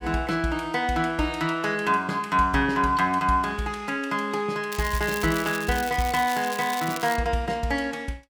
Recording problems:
crackle; from 4.5 to 7 s; loose cable, SNR 11 dB

